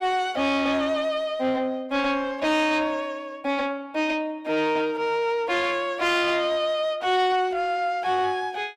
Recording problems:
distortion; soft clipping, signal-to-distortion ratio 10 dB

